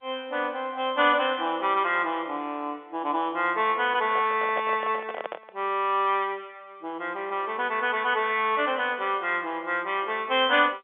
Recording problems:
phone line; 220 Hz to 3.5 kHz, G.711
microphone handling noise; from 4 to 5.5 s; peak -2 dB vs average level

